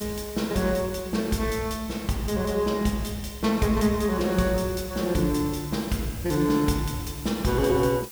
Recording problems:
background hiss; slope +1 dB per octave, SNR 16 dB

